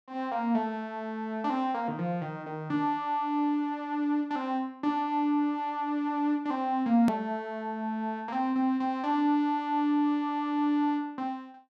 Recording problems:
click at an edit; at 7 s

